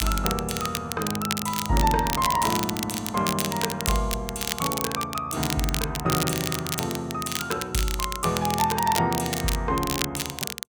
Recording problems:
crackle; vinyl, SNR 4 dB

